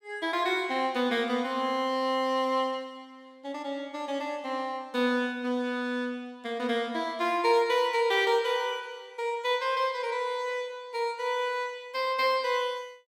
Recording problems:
none

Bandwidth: 16.5 kHz